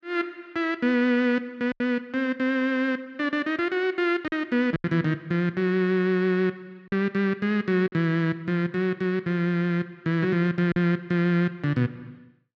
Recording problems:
lost packets; 3% of the sound replaced, filled with silence

